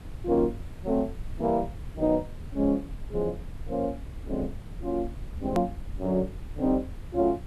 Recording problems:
background hiss; SNR 24 dB
rumble; below 94 Hz, SNR 12 dB
hard cut with a click; at 5.5 s

